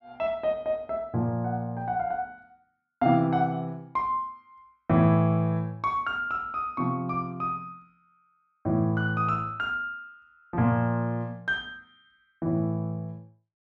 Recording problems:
none

